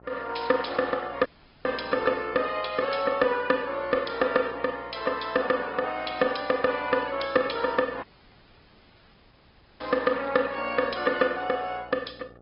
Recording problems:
low-pass filter; nothing above 5.2 kHz
codec artefacts; Opus, log-spectral distance 5 dB
hum; 60 Hz, harmonics up to 1.4 kHz, SNR 25 dB
audio cutting out; at 1.5 s and at 8 s for 2 s

